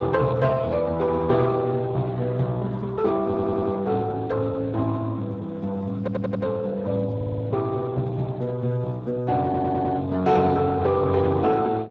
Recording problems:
lossy compression; Speex, log-spectral distance 3 dB
stutter; 4 times, first at 3.5 s

